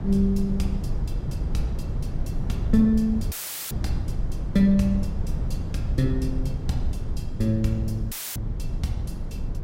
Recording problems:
rumble; below 120 Hz, SNR 5 dB
audio cutting out; at 3.5 s and at 8 s; filled with static

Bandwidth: 16 kHz